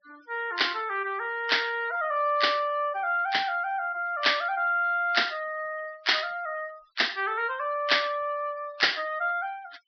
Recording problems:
treble cut off; nothing above 5.5 kHz
noise reduction artefacts; signal-to-artefact ratio 24 dB

